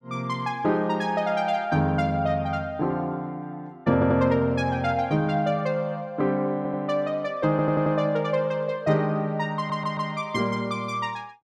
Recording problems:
stutter; 4 times, first at 4 s

